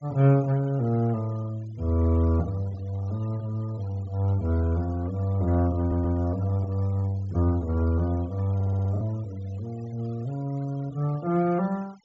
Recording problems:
low-pass filter; nothing above 8 kHz
denoising artefacts; signal-to-artefact ratio 25 dB
lost packets; 0.4% of the sound replaced, filled with the last packet
audio stuttering; at 6 s and at 8.5 s

